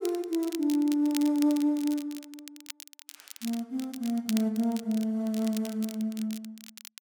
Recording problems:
crackle; vinyl, SNR 15 dB

